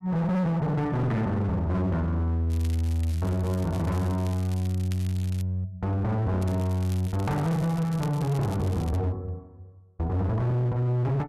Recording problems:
distorted audio; hard clipping, uneven, signal-to-distortion ratio 7 dB
crackling; from 2.5 to 5.5 s and from 6.5 to 9 s; loose cable, SNR 21 dB

